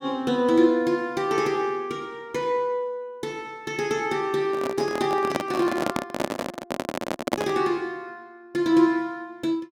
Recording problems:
handling noise; from 4.5 to 7.5 s; peak +4 dB vs average level

